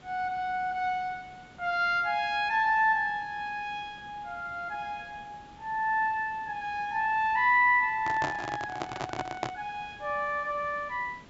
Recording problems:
treble missing; nothing above 8 kHz
background hiss; slope -5 dB per octave, SNR 24 dB
handling noise; from 8 to 9.5 s; peak +1 dB vs average level

